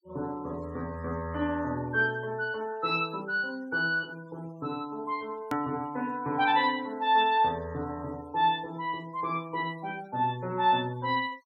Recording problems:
denoising artefacts; signal-to-artefact ratio 25 dB
click at an edit; at 5.5 s

